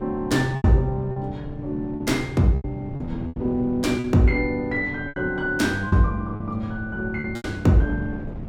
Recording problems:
wind on the microphone; below 240 Hz, SNR 13 dB
packet loss; 8% of the sound replaced, filled with repeated pitch periods

